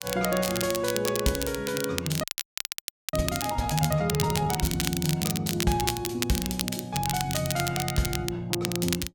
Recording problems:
crackling; vinyl, SNR 4 dB
frozen audio; at 2 s for 1 s

